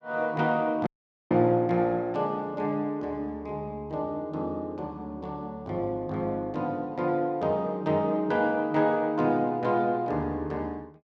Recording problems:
dropout; at 1 s

